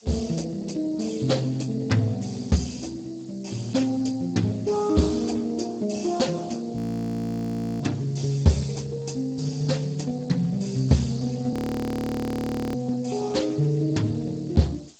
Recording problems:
lossy compression; Speex, log-spectral distance 7 dB
hiss; SNR 27 dB
frozen audio; at 7 s for 1 s and at 12 s for 1 s

